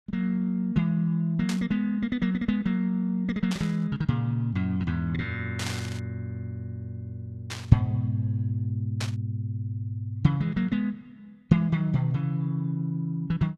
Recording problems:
static burst; 5 times, first at 1.5 s; peak -2 dB vs average level

